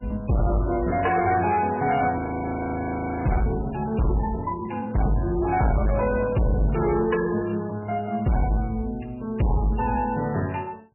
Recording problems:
codec artefacts; MP3, log-spectral distance 4 dB, nothing above 2.5 kHz
distortion; soft clipping, signal-to-distortion ratio 7 dB
frozen audio; at 2 s for 1 s

